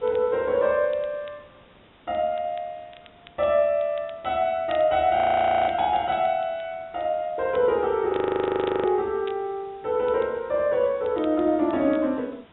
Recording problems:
treble cut off; nothing above 3.8 kHz
background hiss; SNR 29 dB
crackle; vinyl, SNR 27 dB
frozen audio; at 5 s for 0.5 s and at 8 s for 0.5 s

